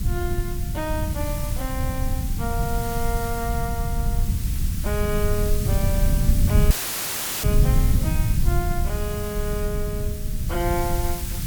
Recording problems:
hiss; slope +1 dB per octave, SNR 4 dB
low-frequency rumble; below 110 Hz, SNR -5 dB
dropout; at 6.5 s for 0.5 s

